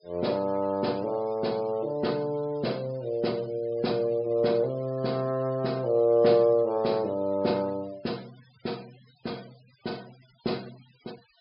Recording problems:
low-pass filter; nothing above 5.5 kHz
noise reduction artefacts; signal-to-artefact ratio 25 dB

